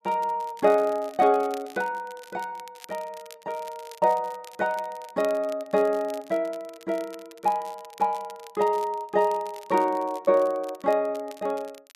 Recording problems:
crackling; vinyl, SNR 23 dB

